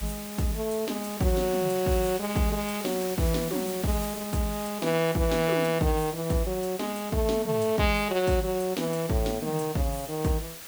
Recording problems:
hiss; slope 0 dB per octave, SNR 10 dB

